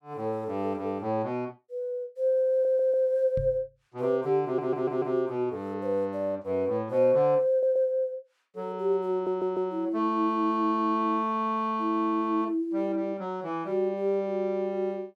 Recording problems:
stutter; 4 times, first at 2.5 s
microphone thump; at 3.5 s; peak -3 dB vs average level

